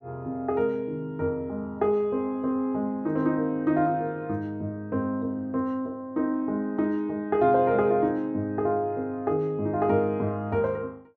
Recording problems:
none

